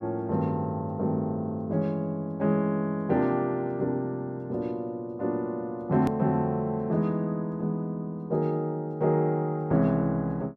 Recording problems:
hard cut with a click; at 6 s

